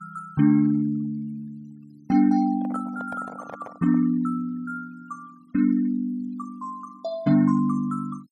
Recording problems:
noise reduction artefacts; signal-to-artefact ratio 27 dB
microphone handling noise; from 2.5 to 4 s; peak -10 dB vs average level

